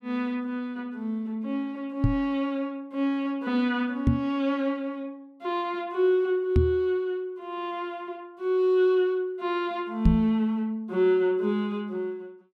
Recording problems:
microphone bump; 4 times, first at 2 s; peak +9 dB vs average level

